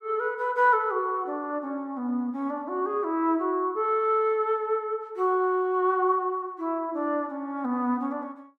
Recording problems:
none

